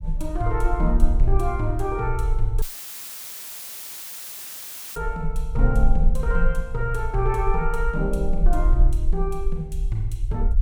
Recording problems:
low-frequency rumble; below 44 Hz, SNR -2 dB
dropout; at 2.5 s for 2.5 s; filled with static

